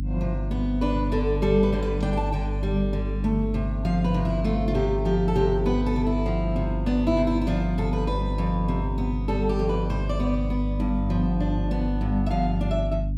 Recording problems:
hum; 50 Hz, harmonics up to 300 Hz, SNR 2 dB

